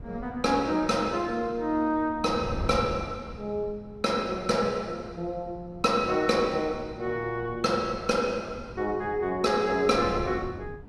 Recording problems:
wind noise; below 210 Hz, SNR 15 dB

